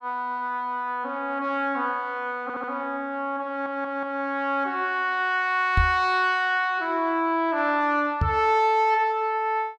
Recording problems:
audio stuttering; at 2.5 s and at 3.5 s
microphone thump; at 6 s and at 8 s; peak +4 dB vs average level

